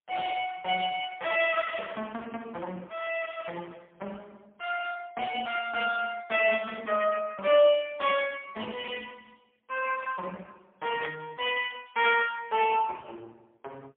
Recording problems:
phone line; 280 Hz to 3.3 kHz, AMR-NB, then MP3
static burst; at 1.5 s and at 11 s; peak -10 dB vs average level

